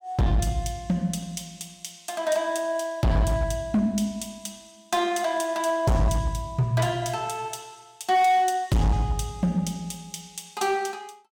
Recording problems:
distorted audio; hard clipping, signal-to-distortion ratio 8 dB

